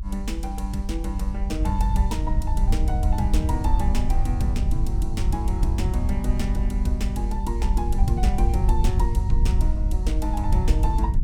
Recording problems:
low-frequency rumble; below 68 Hz, SNR -5 dB

